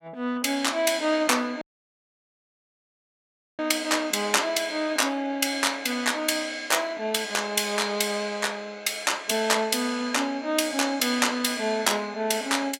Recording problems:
audio cutting out; at 1.5 s for 2 s

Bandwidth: 17 kHz